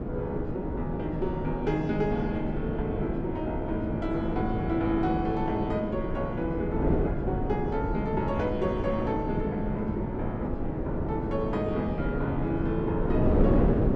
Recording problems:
wind on the microphone; below 370 Hz, SNR 0 dB

